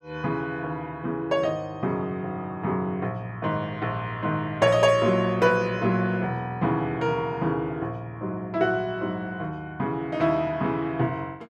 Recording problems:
none

